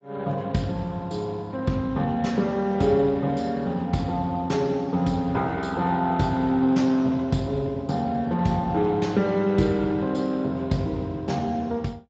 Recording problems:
lossy compression; Speex, log-spectral distance 3 dB, nothing above 7.3 kHz

